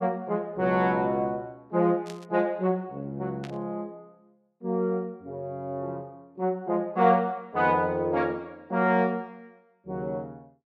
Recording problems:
burst of static; at 2 s and at 3.5 s; peak -11 dB vs average level

